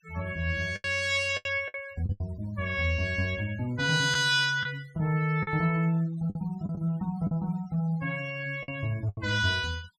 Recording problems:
denoising artefacts; signal-to-artefact ratio 24 dB
packet loss; 7% of the sound replaced, filled with the last packet

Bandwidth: 15 kHz